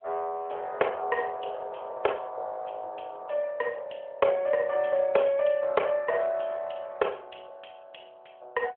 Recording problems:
telephone audio; 370 Hz to 3.3 kHz, AMR-NB

